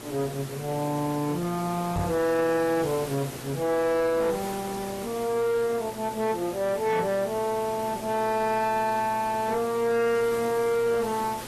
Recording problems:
lossy compression; AAC, log-spectral distance 5 dB, nothing above 13.1 kHz
distortion; hard clipping, uneven, signal-to-distortion ratio 9 dB
hum; 60 Hz, harmonics up to 1.1 kHz, SNR 21 dB
background hiss; slope -4 dB per octave, SNR 13 dB
knock on the microphone; at 2 s; peak 0 dB vs average level

